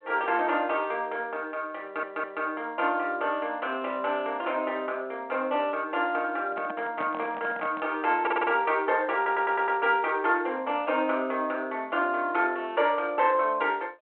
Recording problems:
telephone audio; 260 Hz to 3.5 kHz, G.726
stutter; at 2 s, at 8 s and at 9 s
microphone handling noise; from 6.5 to 8 s; peak -6 dB vs average level

